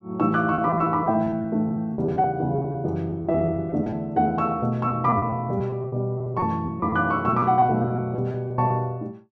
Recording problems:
lost packets; 13% of the sound replaced, filled with repeated pitch periods

